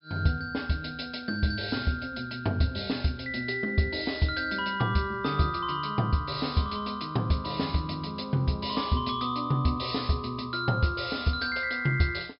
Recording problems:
treble missing; nothing above 5.3 kHz

